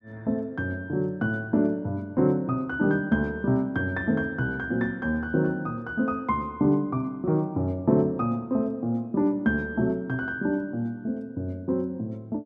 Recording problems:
none

